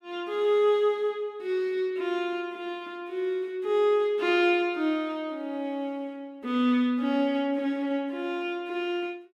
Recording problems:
none

